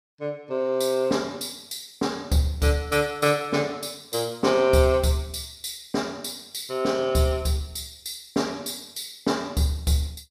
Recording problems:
none

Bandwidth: 15 kHz